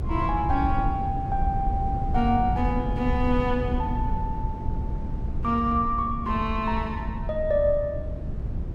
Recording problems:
low-frequency rumble; below 120 Hz, SNR 3 dB

